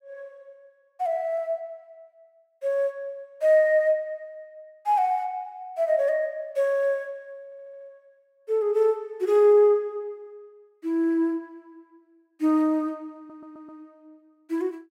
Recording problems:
stutter; at 7.5 s and at 13 s

